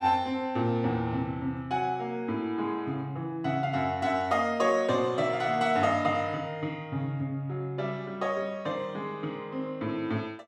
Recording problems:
none

